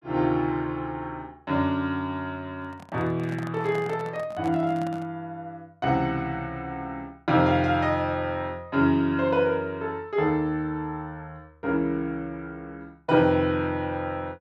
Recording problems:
microphone handling noise; from 2.5 to 5 s; peak -8 dB vs average level

